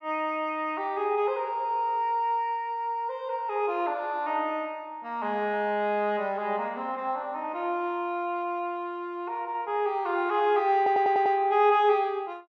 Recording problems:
stutter; at 11 s

